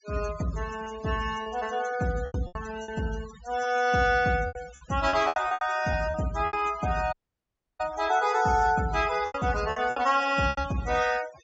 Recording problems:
low-pass filter; nothing above 7.5 kHz
noise reduction artefacts; signal-to-artefact ratio 16 dB
lost packets; 10% of the sound replaced, filled with repeated pitch periods
dropout; at 7 s for 0.5 s

